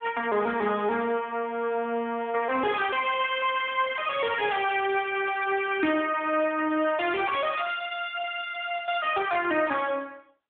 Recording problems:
phone line; 240 Hz to 3.6 kHz, AMR-NB

